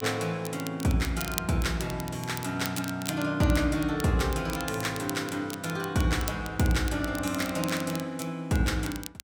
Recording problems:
crackle; vinyl, SNR 12 dB

